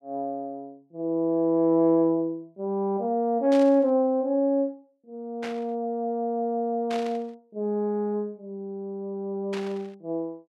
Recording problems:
static burst; 4 times, first at 3.5 s; peak -8 dB vs average level

